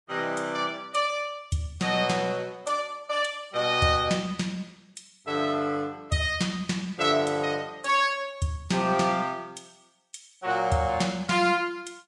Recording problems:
lossy codec; Vorbis, log-spectral distance 3 dB

